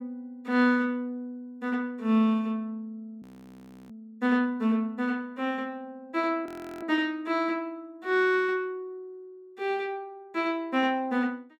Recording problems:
frozen audio; at 3 s for 0.5 s and at 6.5 s

